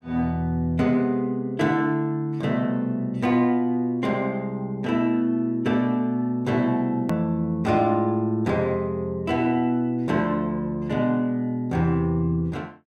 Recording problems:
click at an edit; at 7 s

